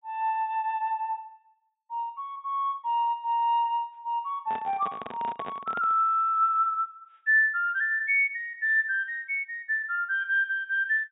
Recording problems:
low-pass filter; nothing above 4 kHz
handling noise; from 4.5 to 6 s; peak -7 dB vs average level

